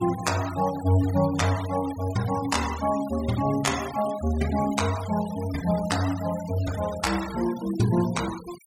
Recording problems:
noise reduction artefacts; signal-to-artefact ratio 13 dB

